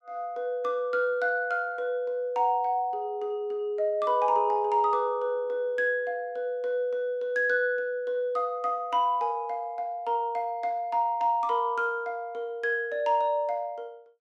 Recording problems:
none

